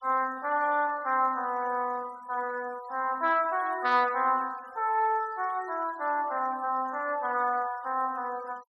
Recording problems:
denoising artefacts; signal-to-artefact ratio 24 dB

